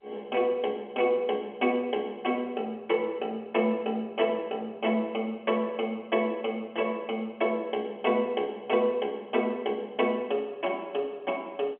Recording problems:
phone line; 240 Hz to 3.4 kHz, G.711

